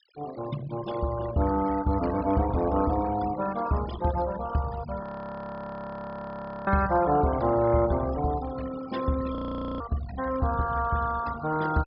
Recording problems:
low-pass filter; nothing above 5.5 kHz
denoising artefacts; signal-to-artefact ratio 14 dB
frozen audio; at 5 s for 1.5 s and at 9.5 s

